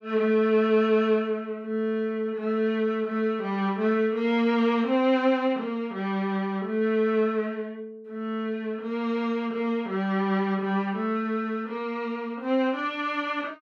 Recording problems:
none

